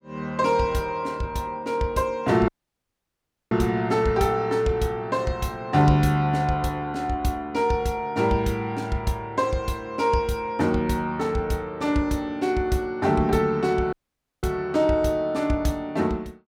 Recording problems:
audio cutting out; at 2.5 s for 1 s and at 14 s for 0.5 s

